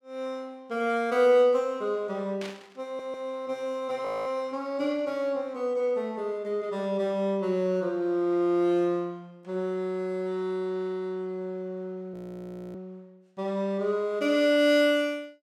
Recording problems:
static burst; at 2.5 s; peak -8 dB vs average level
stutter; at 3 s
frozen audio; at 4 s and at 12 s for 0.5 s

